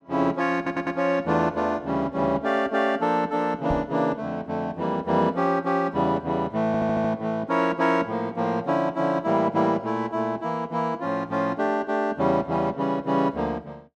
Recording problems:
audio stuttering; at 0.5 s and at 6.5 s
knock on the microphone; at 3.5 s; peak -3 dB vs average level

